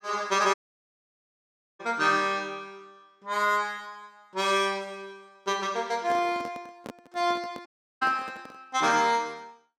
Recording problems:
dropout; at 0.5 s for 1.5 s and at 7.5 s
handling noise; from 6 to 8.5 s; peak -8 dB vs average level

